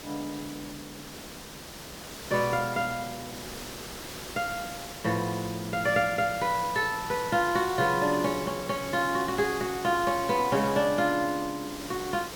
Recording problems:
background hiss; slope -3 dB per octave, SNR 11 dB

